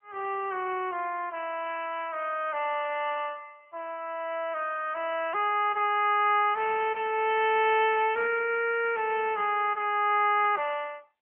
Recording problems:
phone line; 340 Hz to 3.2 kHz, AMR-NB

